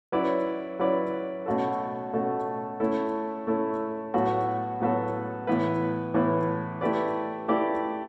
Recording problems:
none

